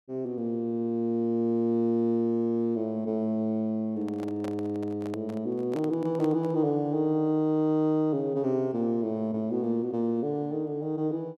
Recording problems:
microphone handling noise; from 4 to 6.5 s; peak -8 dB vs average level

